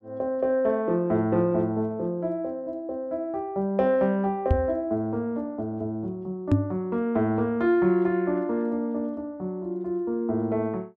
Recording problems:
microphone thump; at 4.5 s and at 6.5 s; peak +8 dB vs average level

